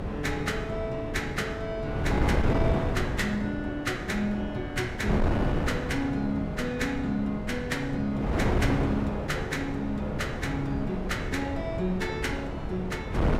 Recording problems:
wind noise; below 430 Hz, SNR 1 dB

